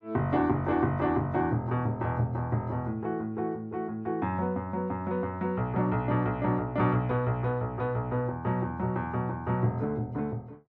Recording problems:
none

